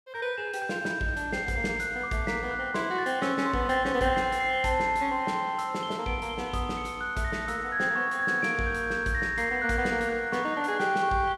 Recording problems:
none

